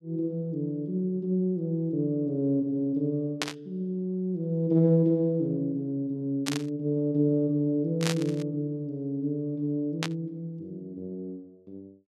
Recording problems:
static burst; 4 times, first at 3.5 s; peak +4 dB vs average level

